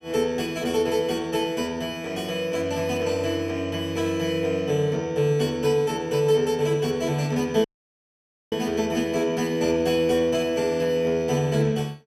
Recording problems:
audio cutting out; at 7.5 s for 1 s

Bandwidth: 15.5 kHz